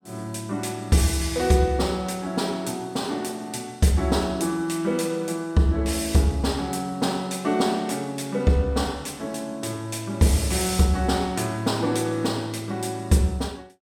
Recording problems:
none

